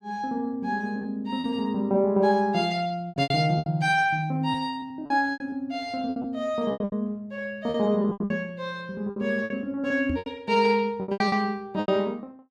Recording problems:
packet loss; 12% of the sound replaced, filled with repeated pitch periods
knock on the microphone; at 10 s; peak -2 dB vs average level

